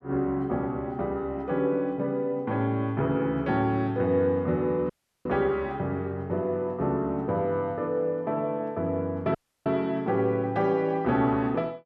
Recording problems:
dropout; at 5 s and at 9.5 s

